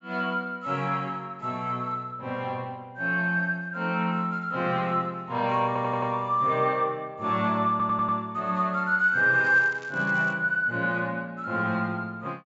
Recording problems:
low-pass filter; nothing above 7.5 kHz
audio stuttering; at 5.5 s and at 7.5 s
crackle; at 9.5 s; loose cable, SNR 26 dB

